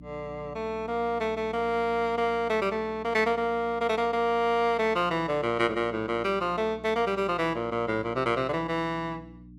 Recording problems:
mains hum; 60 Hz, harmonics up to 300 Hz, SNR 20 dB

